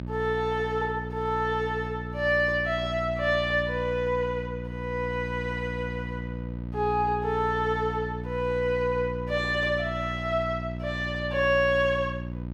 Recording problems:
hum; 60 Hz, harmonics up to 660 Hz, SNR 8 dB

